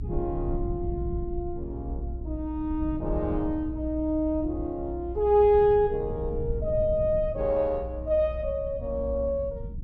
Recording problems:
low-frequency rumble; below 100 Hz, SNR 9 dB

